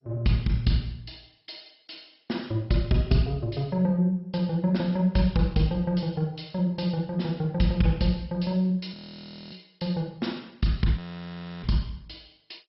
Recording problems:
codec artefacts; MP2, log-spectral distance 5 dB, nothing above 5.3 kHz
audio freezing; at 9 s for 0.5 s and at 11 s for 0.5 s

